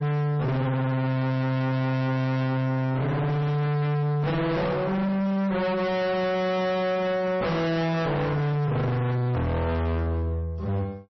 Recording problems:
lossy compression; MP3, log-spectral distance 2 dB, nothing above 5.8 kHz
distortion; hard clipping, signal-to-distortion ratio 5 dB

